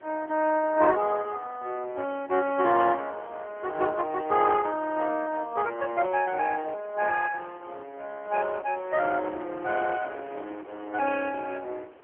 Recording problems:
telephone audio; 280 Hz to 3.3 kHz, AMR-NB
wind on the microphone; below 1 kHz, SNR 23 dB

